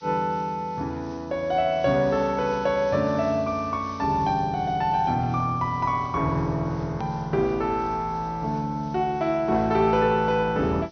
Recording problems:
low-pass filter; nothing above 6.2 kHz
background hiss; slope +5 dB per octave, SNR 27 dB
click at an edit; at 7 s

